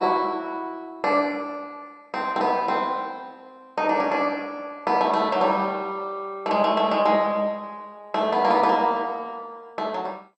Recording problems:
lossy compression; MP2, log-spectral distance 2 dB

